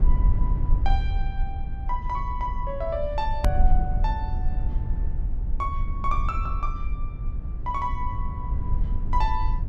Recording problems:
rumble; below 60 Hz, SNR -3 dB
click at an edit; at 3.5 s

